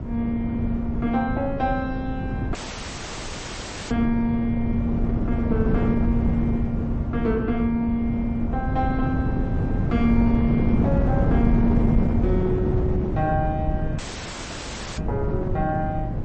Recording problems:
lossy compression; MP3, log-spectral distance 3 dB, nothing above 6.7 kHz
wind on the microphone; below 210 Hz, SNR 0 dB
audio cutting out; at 2.5 s for 1.5 s and at 14 s for 1 s

